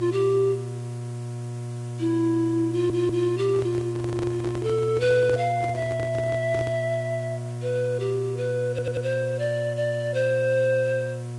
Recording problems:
lossy codec; Vorbis, log-spectral distance 2 dB, nothing above 10.7 kHz
mains hum; 60 Hz, harmonics up to 960 Hz, SNR 8 dB
background hiss; slope -1 dB per octave, SNR 24 dB
audio stuttering; at 2.5 s and at 8.5 s
microphone handling noise; from 3.5 to 7 s; peak -4 dB vs average level

